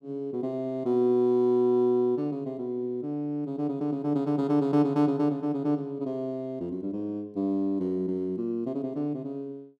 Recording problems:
none

